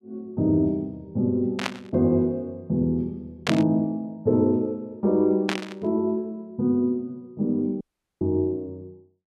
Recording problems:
burst of static; at 1.5 s, at 3.5 s and at 5.5 s; peak +3 dB vs average level
audio cutting out; at 8 s

